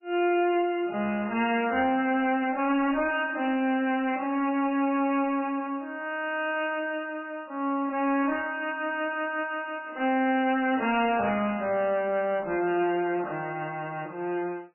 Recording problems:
lossy compression; AAC, then MP3, log-spectral distance 3 dB, nothing above 2.6 kHz
distortion; hard clipping, uneven, signal-to-distortion ratio 10 dB

